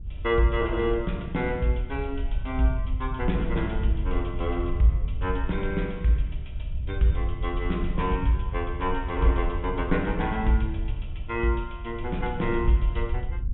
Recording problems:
low-pass filter; nothing above 3.6 kHz
wind on the microphone; below 72 Hz, SNR 5 dB

